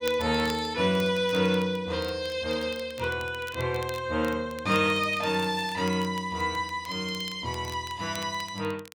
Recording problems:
crackling; vinyl, SNR 20 dB

